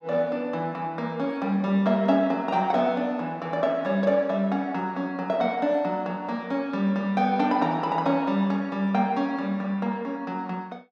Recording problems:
none

